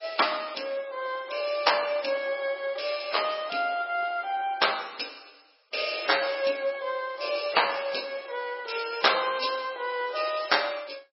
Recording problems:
codec artefacts; MP3, log-spectral distance 8 dB, nothing above 5.5 kHz

